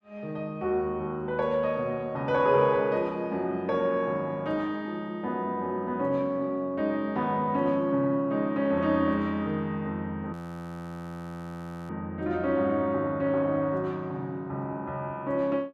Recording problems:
frozen audio; at 10 s for 1.5 s

